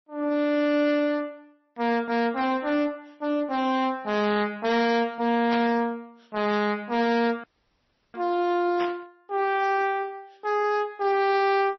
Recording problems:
codec artefacts; MP3, then MP3, log-spectral distance 2 dB, nothing above 5.8 kHz
distortion; hard clipping, signal-to-distortion ratio 11 dB
static burst; at 5.5 s and at 9 s; peak -5 dB vs average level
audio cutting out; at 7.5 s for 0.5 s

